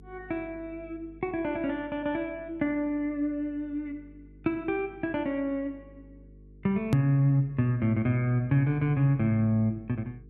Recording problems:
mains hum; 50 Hz, harmonics up to 450 Hz, SNR 24 dB
edit click; at 7 s

